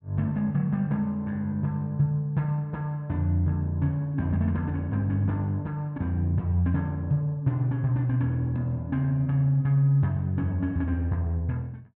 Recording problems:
none

